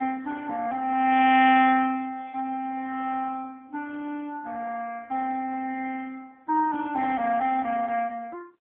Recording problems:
telephone audio; 320 Hz to 3.4 kHz, AMR-NB

